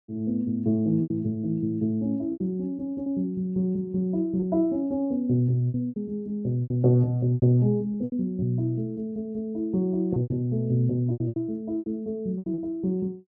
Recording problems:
packet loss; 9% of the sound replaced, filled with repeated pitch periods

